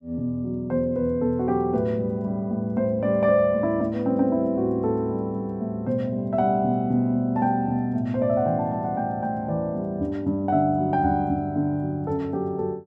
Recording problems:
none

